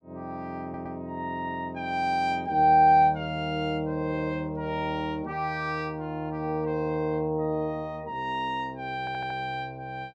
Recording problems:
audio stuttering; at 0.5 s and at 9 s

